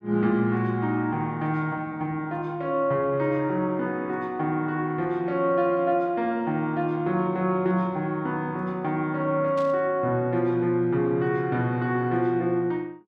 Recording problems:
burst of static; at 9.5 s; peak -15 dB vs average level

